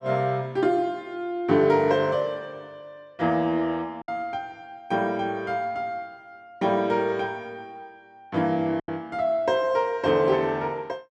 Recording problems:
lost packets; 1.3% of the sound replaced, filled with silence

